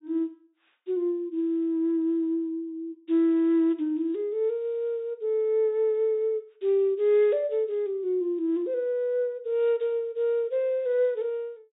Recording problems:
treble missing; nothing above 4 kHz

